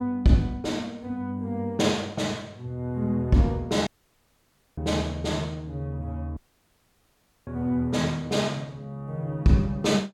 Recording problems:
audio cutting out; at 4 s for 1 s and at 6.5 s for 1 s

